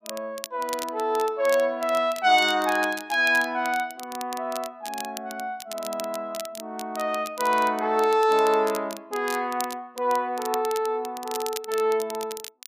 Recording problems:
crackle; vinyl, SNR 14 dB

